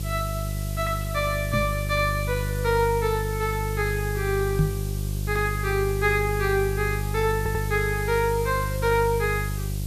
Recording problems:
hum; 50 Hz, harmonics up to 550 Hz, SNR 4 dB
background hiss; slope +6 dB per octave, SNR 13 dB
microphone thump; at 1.5 s and at 4.5 s; peak +6 dB vs average level
audio stuttering; at 7.5 s

